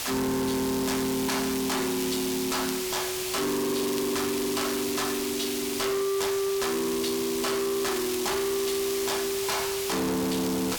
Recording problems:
distortion; hard clipping, uneven, signal-to-distortion ratio 6 dB
hiss; slope 0 dB per octave, SNR 4 dB
crackle; vinyl, SNR 23 dB

